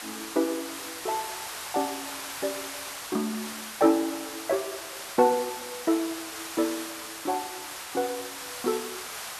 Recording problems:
background hiss; SNR 7 dB

